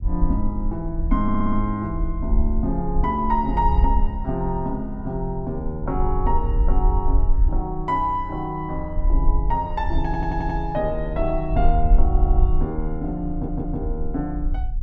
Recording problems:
low-frequency rumble; below 52 Hz, SNR 0 dB
audio stuttering; 4 times, first at 1 s

